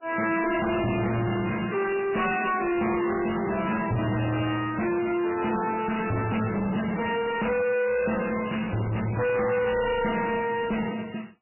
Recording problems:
codec artefacts; MP3, log-spectral distance 7 dB, nothing above 2.8 kHz
distortion; soft clipping, signal-to-distortion ratio 5 dB

